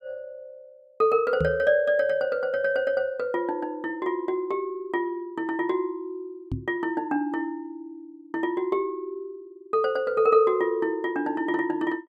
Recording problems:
knock on the microphone; at 1.5 s and at 6.5 s; peak 0 dB vs average level

